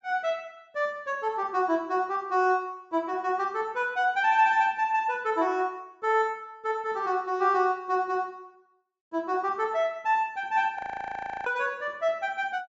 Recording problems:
treble missing; nothing above 8 kHz
frozen audio; at 11 s for 0.5 s

